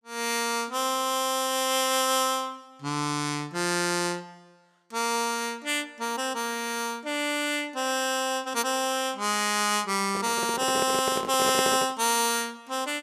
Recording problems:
microphone handling noise; from 10 to 12 s; peak +1 dB vs average level

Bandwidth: 14.5 kHz